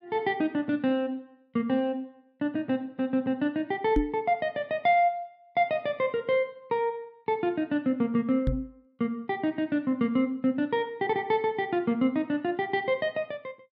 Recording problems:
microphone thump; at 4 s and at 8.5 s; peak +6 dB vs average level

